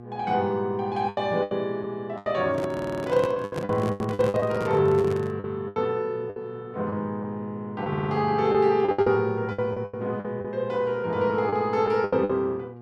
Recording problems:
hum; 60 Hz, harmonics up to 1.2 kHz, SNR 18 dB
lost packets; 12% of the sound replaced, filled with the last packet
microphone handling noise; from 2.5 to 5.5 s; peak -2 dB vs average level
stutter; at 2.5 s and at 8 s

